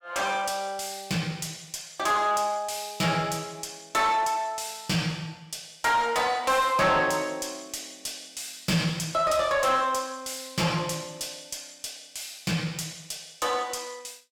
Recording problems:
distorted audio; soft clipping, signal-to-distortion ratio 10 dB

